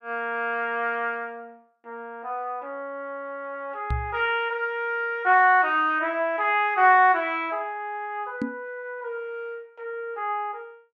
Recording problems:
microphone thump; at 4 s and at 8.5 s; peak 0 dB vs average level

